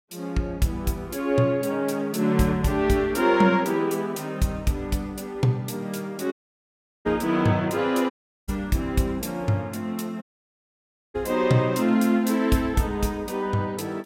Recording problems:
audio cutting out; at 6.5 s for 0.5 s, at 8 s and at 10 s for 1 s

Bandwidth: 16 kHz